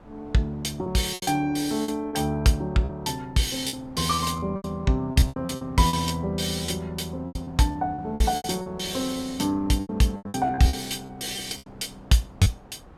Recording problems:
wind noise; below 710 Hz, SNR 24 dB
lost packets; 13% of the sound replaced, filled with repeated pitch periods

